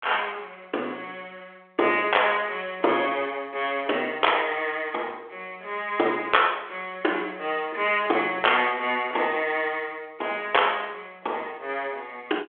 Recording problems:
telephone audio; 300 Hz to 3.4 kHz, G.726

